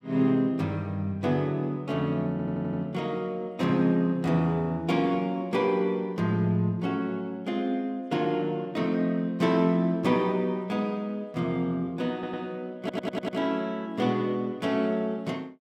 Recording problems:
stutter; at 2.5 s, at 12 s and at 13 s

